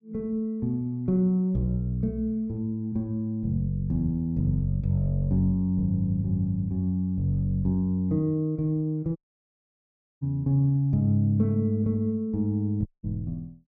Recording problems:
dropout; at 9 s for 1 s and at 13 s

